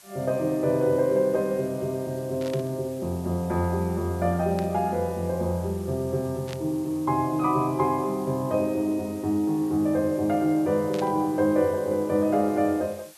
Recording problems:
background hiss; slope +1 dB per octave, SNR 23 dB
static burst; 4 times, first at 2.5 s; peak -10 dB vs average level

